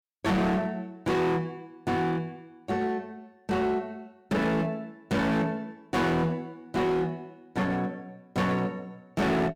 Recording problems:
distortion; hard clipping, uneven, signal-to-distortion ratio 7 dB

